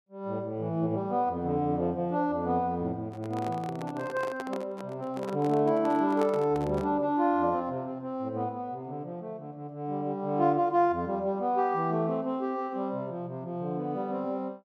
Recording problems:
microphone handling noise; from 3 to 7 s; peak -3 dB vs average level

